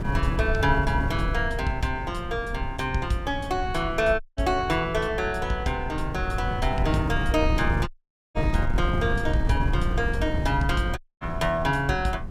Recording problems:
wind noise; below 110 Hz, SNR 4 dB
audio cutting out; at 4 s, at 8 s and at 11 s

